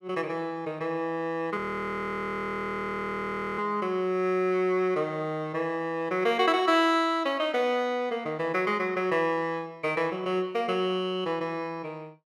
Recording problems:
frozen audio; at 1.5 s for 2 s

